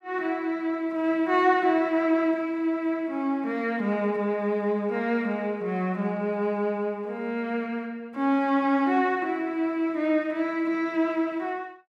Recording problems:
none

